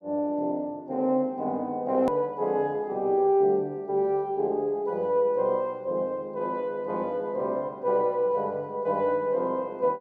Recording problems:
hard cut with a click; at 2 s

